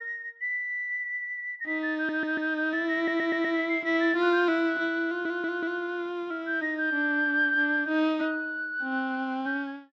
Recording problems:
audio stuttering; at 2 s, at 3 s and at 5 s

